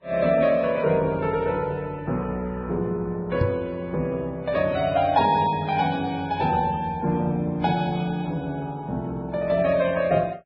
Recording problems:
codec artefacts; MP3, then Vorbis, log-spectral distance 2 dB, nothing above 5.2 kHz
knock on the microphone; at 3.5 s; peak +5 dB vs average level

